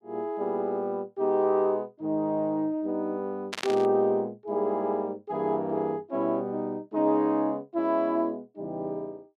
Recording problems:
static burst; at 3.5 s; peak 0 dB vs average level

